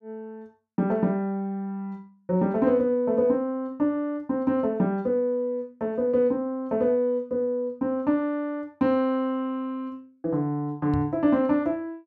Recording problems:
knock on the microphone; at 11 s; peak -1 dB vs average level

